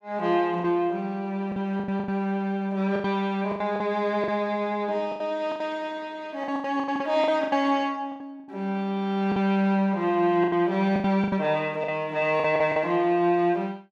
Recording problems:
packet loss; 12% of the sound replaced, filled with the last packet

